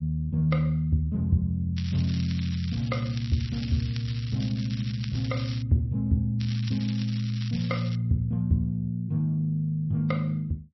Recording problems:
lossy compression; MP3, log-spectral distance 5 dB, nothing above 5.5 kHz
crackle; from 2 to 5.5 s and from 6.5 to 8 s; loose cable, SNR 15 dB

